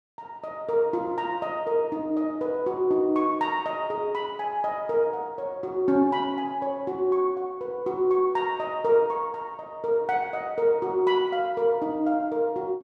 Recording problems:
none

